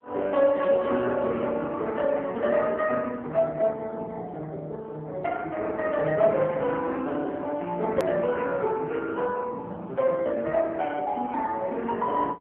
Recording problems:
telephone audio; 220 Hz to 3.3 kHz, AMR-NB
edit click; at 8 s

